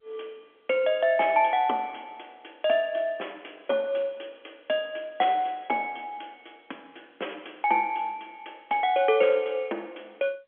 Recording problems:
telephone audio; 240 Hz to 3.4 kHz, G.711

